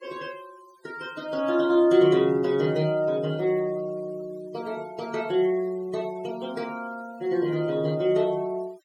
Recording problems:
noise reduction artefacts; signal-to-artefact ratio 23 dB

